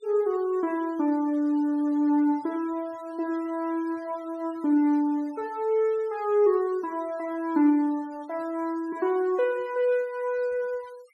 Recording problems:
denoising artefacts; signal-to-artefact ratio 27 dB

